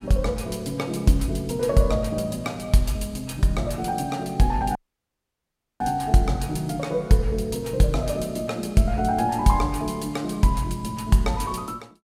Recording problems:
audio cutting out; at 5 s for 1 s

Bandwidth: 16 kHz